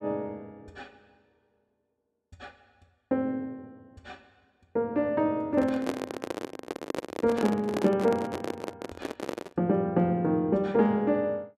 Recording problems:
handling noise; from 5.5 to 9.5 s; peak +1 dB vs average level

